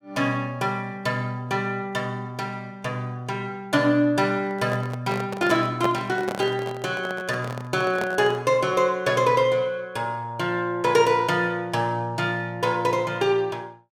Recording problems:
handling noise; from 4.5 to 8.5 s; peak +1 dB vs average level

